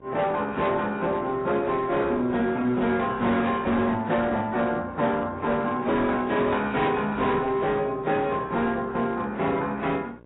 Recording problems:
lossy codec; AAC, then AAC, log-spectral distance 2 dB, nothing above 3.8 kHz
distorted audio; hard clipping, uneven, signal-to-distortion ratio 10 dB
electrical hum; 60 Hz, harmonics up to 1.7 kHz, SNR 23 dB

